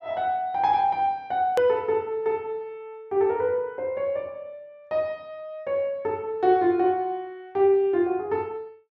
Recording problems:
hard cut with a click; at 1.5 s

